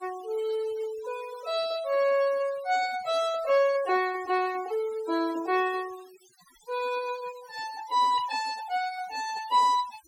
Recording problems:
noise reduction artefacts; signal-to-artefact ratio 18 dB

